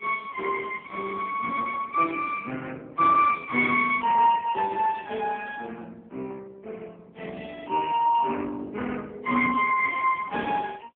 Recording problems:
phone line; 220 Hz to 2.5 kHz, AMR-NB

